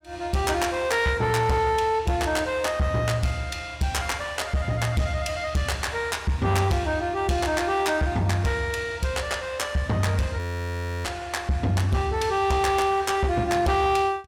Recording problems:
distortion; soft clipping, signal-to-distortion ratio 12 dB
frozen audio; at 10 s for 0.5 s

